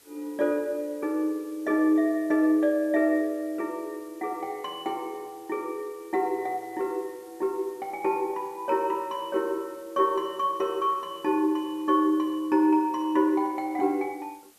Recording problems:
background hiss; slope -1 dB per octave, SNR 27 dB

